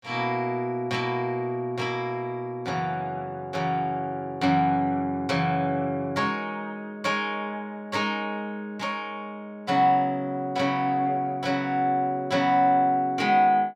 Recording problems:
none

